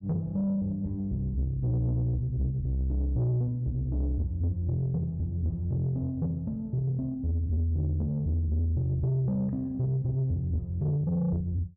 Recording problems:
distorted audio; soft clipping, signal-to-distortion ratio 11 dB

